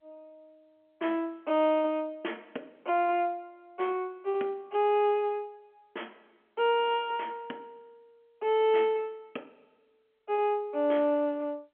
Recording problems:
telephone audio; 240 Hz to 3.3 kHz, G.711

